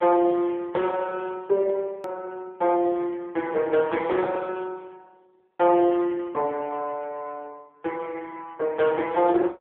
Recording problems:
phone line; 280 Hz to 2.7 kHz, AMR-NB
click at an edit; at 2 s

